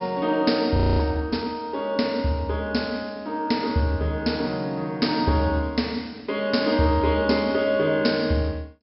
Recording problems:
low-pass filter; nothing above 5.4 kHz
frozen audio; at 1 s

